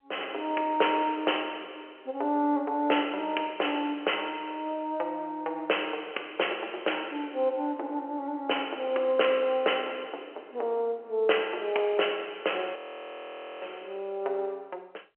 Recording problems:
phone line; 320 Hz to 3.1 kHz, G.711
frozen audio; at 13 s for 1 s

